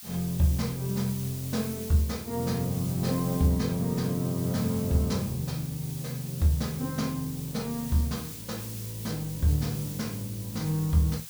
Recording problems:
background hiss; slope +4 dB per octave, SNR 11 dB

